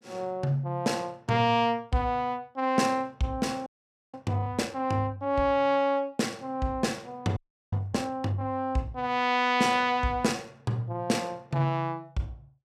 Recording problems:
audio freezing; at 3.5 s and at 7.5 s

